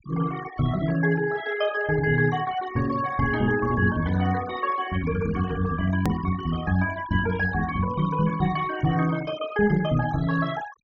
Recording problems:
low-pass filter; nothing above 6.9 kHz
denoising artefacts; signal-to-artefact ratio 15 dB
hard cut with a click; at 6 s

